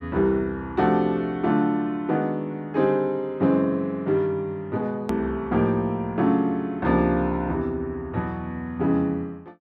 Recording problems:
edit click; at 5 s

